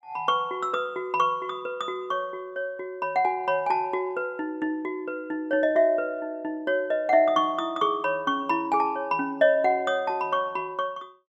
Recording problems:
none

